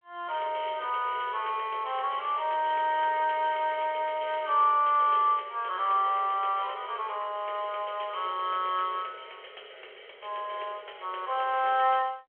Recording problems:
phone line; 370 Hz to 3.3 kHz, G.726

